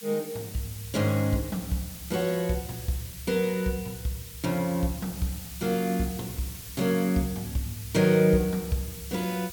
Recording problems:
hiss; slope +3 dB per octave, SNR 12 dB

